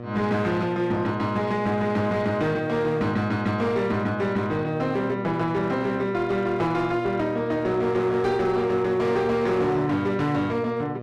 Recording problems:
distortion; hard clipping, uneven, signal-to-distortion ratio 11 dB
hum; 60 Hz, harmonics up to 1.3 kHz, SNR 11 dB

